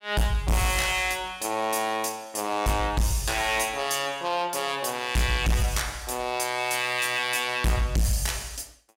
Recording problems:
distorted audio; hard clipping, signal-to-distortion ratio 6 dB

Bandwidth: 16 kHz